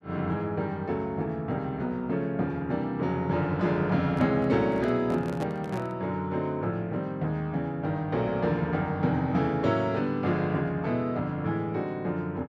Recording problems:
microphone handling noise; from 4 to 6 s; peak -4 dB vs average level

